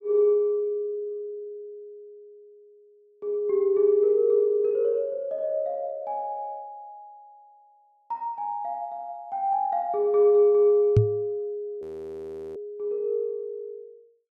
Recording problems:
microphone thump; at 11 s; peak +9 dB vs average level
audio freezing; at 12 s for 0.5 s

